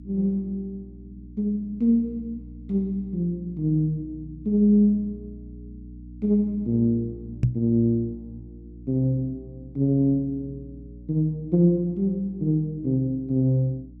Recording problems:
hum; 60 Hz, harmonics up to 300 Hz, SNR 19 dB
knock on the microphone; at 7.5 s; peak +6 dB vs average level

